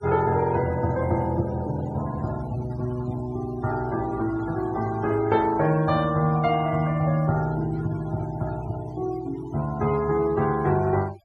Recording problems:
noise reduction artefacts; signal-to-artefact ratio 18 dB

